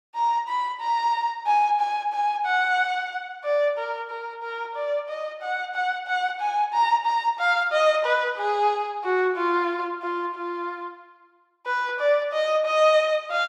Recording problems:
none

